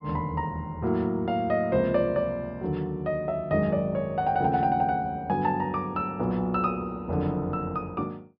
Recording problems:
treble cut off; nothing above 5.5 kHz

